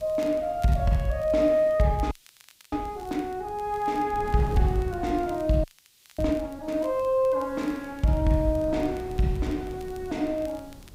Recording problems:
hiss; SNR 30 dB
wind on the microphone; below 250 Hz, SNR 17 dB
crackle; vinyl, SNR 28 dB
audio freezing; at 2 s for 0.5 s and at 5.5 s for 0.5 s

